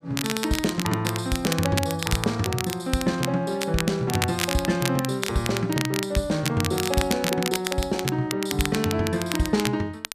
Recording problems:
crackle; vinyl, SNR 5 dB

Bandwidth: 14.5 kHz